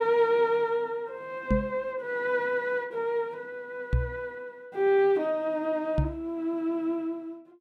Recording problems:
knock on the microphone; at 1.5 s, at 4 s and at 6 s; peak +6 dB vs average level

